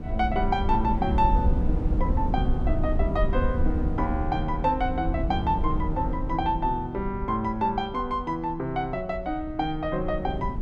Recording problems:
wind on the microphone; below 82 Hz, SNR 2 dB

